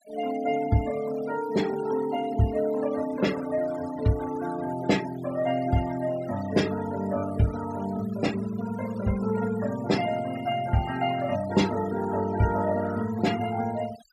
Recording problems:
denoising artefacts; signal-to-artefact ratio 15 dB

